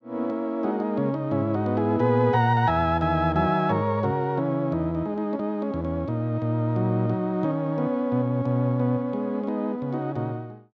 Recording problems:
none

